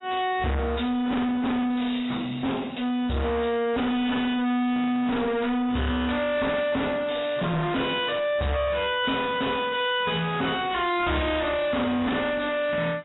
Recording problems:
codec artefacts; AAC, log-spectral distance 6 dB, nothing above 3.5 kHz
distorted audio; soft clipping, signal-to-distortion ratio 6 dB

